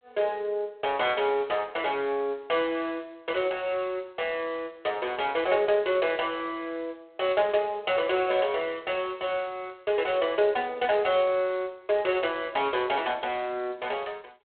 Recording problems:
telephone audio; 320 Hz to 3.5 kHz, G.726

